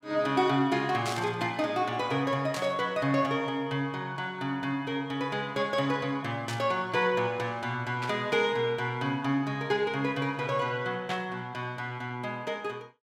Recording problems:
burst of static; 5 times, first at 1 s; peak -2 dB vs average level

